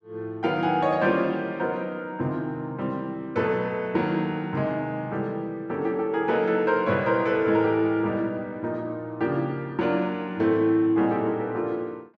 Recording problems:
none

